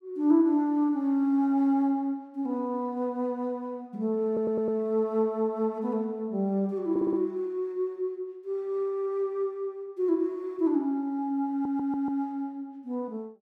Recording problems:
audio stuttering; at 4.5 s, at 7 s and at 12 s

